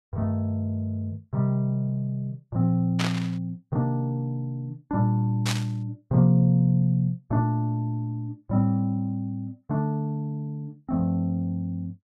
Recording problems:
burst of static; at 3 s and at 5.5 s; peak +1 dB vs average level

